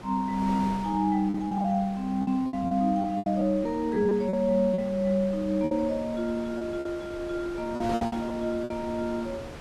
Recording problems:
wind noise; below 1.2 kHz, SNR 14 dB
lost packets; 11% of the sound replaced, filled with repeated pitch periods

